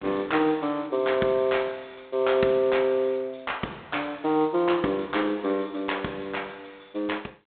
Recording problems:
telephone audio; 260 Hz to 3.7 kHz, G.726

